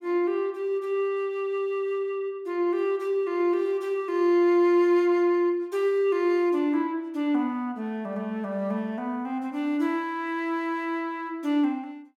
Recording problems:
none

